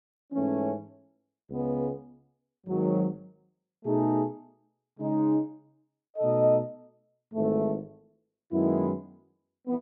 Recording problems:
none

